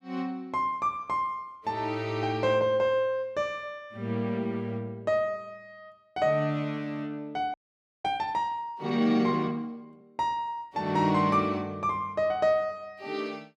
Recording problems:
audio freezing; at 7.5 s

